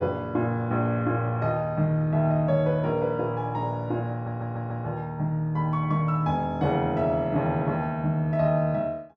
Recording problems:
audio stuttering; at 4 s

